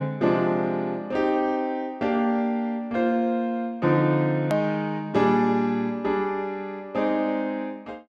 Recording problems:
click at an edit; at 4.5 s

